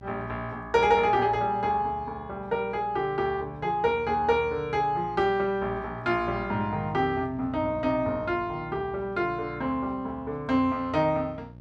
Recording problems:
hum; 60 Hz, harmonics up to 900 Hz, SNR 18 dB

